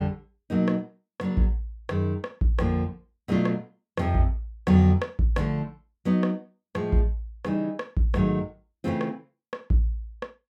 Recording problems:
none

